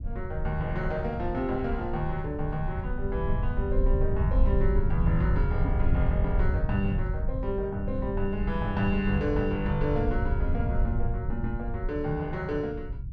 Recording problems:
low-frequency rumble; below 86 Hz, SNR 0 dB

